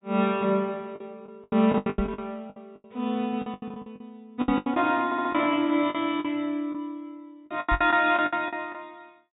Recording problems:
treble cut off; nothing above 4 kHz
packet loss; 16% of the sound replaced, filled with the last packet
microphone bump; at 2 s, at 4.5 s and at 7.5 s; peak 0 dB vs average level
stutter; at 5 s

